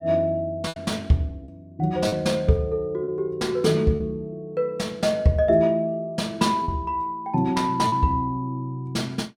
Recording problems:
lost packets; 3% of the sound replaced, filled with repeated pitch periods

